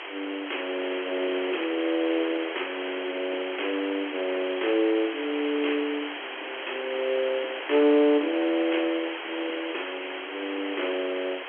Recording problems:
telephone audio; 260 Hz to 3.3 kHz, G.711
hiss; SNR 7 dB

